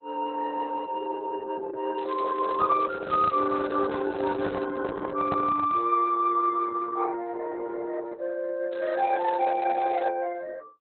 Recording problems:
lossy codec; Opus, log-spectral distance 4 dB, nothing above 3.8 kHz
crackling; from 2 to 4.5 s and from 8.5 to 10 s; loose cable, SNR 22 dB
microphone handling noise; from 2.5 to 6 s; peak 0 dB vs average level

